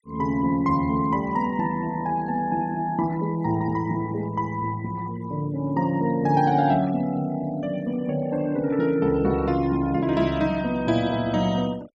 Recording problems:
noise reduction artefacts; signal-to-artefact ratio 23 dB

